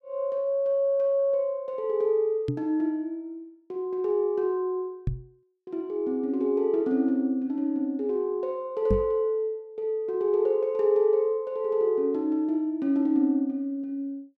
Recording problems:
microphone bump; at 2.5 s, at 5 s and at 9 s; peak +3 dB vs average level

